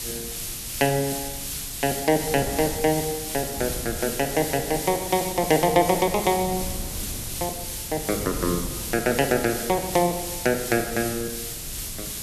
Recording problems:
background hiss; slope +4 dB per octave, SNR 6 dB
wind noise; below 200 Hz, SNR 15 dB

